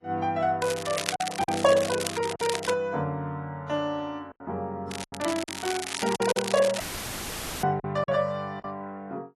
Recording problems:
codec artefacts; AAC, log-spectral distance 5 dB
lost packets; 6% of the sound replaced, filled with silence
crackling; from 0.5 to 2.5 s and from 5 to 7 s; loose cable, SNR 6 dB
audio cutting out; at 7 s for 1 s; filled with static

